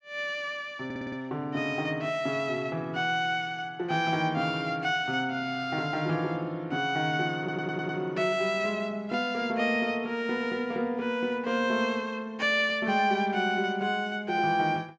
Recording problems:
stutter; at 1 s and at 7.5 s

